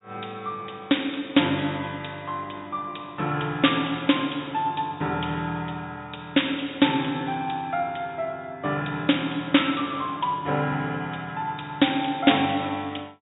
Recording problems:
low-pass filter; nothing above 4 kHz

